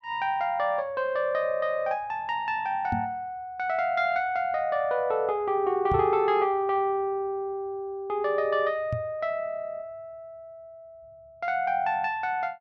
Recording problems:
knock on the microphone; at 3 s, at 6 s and at 9 s; peak -1 dB vs average level

